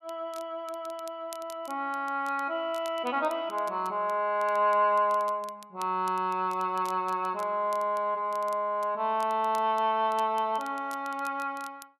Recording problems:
crackle; vinyl, SNR 23 dB

